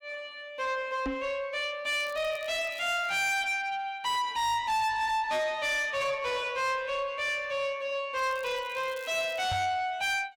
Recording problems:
distortion; soft clipping, signal-to-distortion ratio 7 dB
microphone thump; at 1 s and at 9.5 s; peak 0 dB vs average level
crackle; from 2 to 3 s and from 8 to 9.5 s; loose cable, SNR 23 dB

